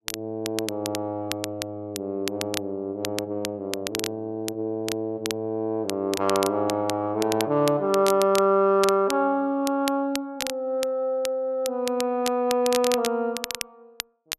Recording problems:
crackling; vinyl, SNR 9 dB

